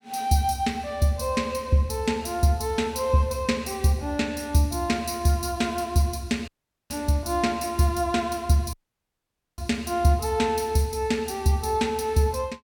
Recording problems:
audio cutting out; at 6.5 s and at 8.5 s for 1 s

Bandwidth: 17.5 kHz